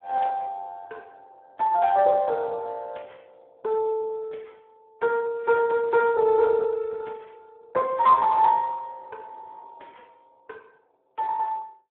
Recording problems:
telephone audio; 370 Hz to 2.1 kHz, Speex

